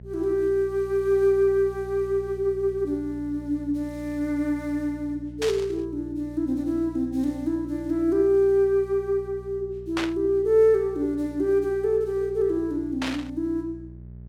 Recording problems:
electrical hum; 60 Hz, harmonics up to 420 Hz, SNR 18 dB
static burst; at 5.5 s, at 10 s and at 13 s; peak -1 dB vs average level

